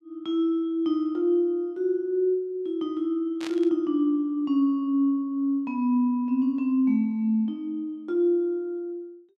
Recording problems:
static burst; at 3.5 s; peak -9 dB vs average level

